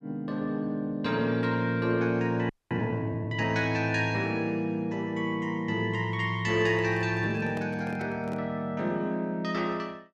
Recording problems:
audio freezing; at 2.5 s
microphone handling noise; from 6.5 to 8.5 s; peak -6 dB vs average level

